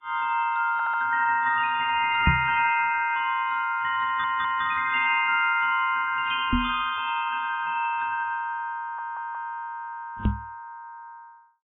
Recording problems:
lossy compression; MP3, then AAC, log-spectral distance 2 dB, nothing above 3.2 kHz
stutter; at 0.5 s, at 4 s and at 9 s
knock on the microphone; at 2.5 s, at 6.5 s and at 10 s; peak +5 dB vs average level

